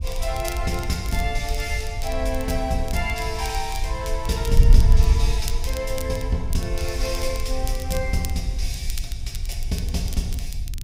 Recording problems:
wind noise; below 62 Hz, SNR -2 dB
crackle; vinyl, SNR 12 dB

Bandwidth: 15.5 kHz